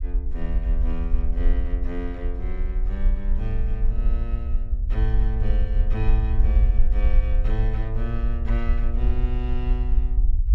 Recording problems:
rumble; below 52 Hz, SNR -8 dB

